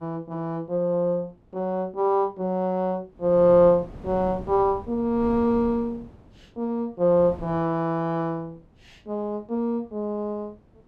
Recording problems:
wind on the microphone; below 320 Hz, SNR 18 dB

